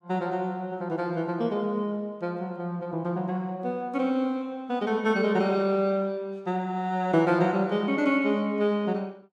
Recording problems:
none

